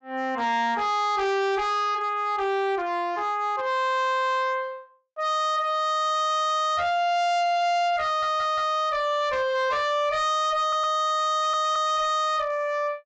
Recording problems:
treble cut off; nothing above 8 kHz
distortion; hard clipping, uneven, signal-to-distortion ratio 8 dB
audio stuttering; at 8 s and at 11 s

